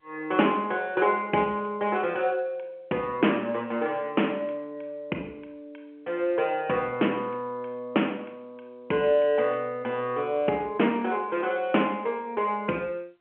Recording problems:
telephone audio; 240 Hz to 3.2 kHz, G.711

